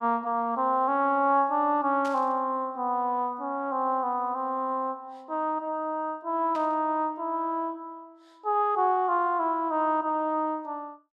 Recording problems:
static burst; at 2 s and at 6.5 s; peak -13 dB vs average level

